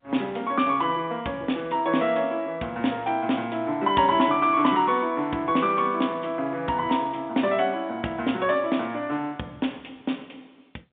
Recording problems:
phone line; 130 Hz to 3.7 kHz, G.711

